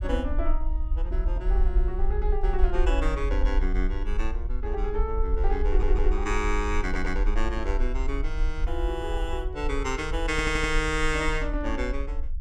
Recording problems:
low-frequency rumble; below 46 Hz, SNR -1 dB
audio stuttering; at 5.5 s, at 7 s and at 10 s

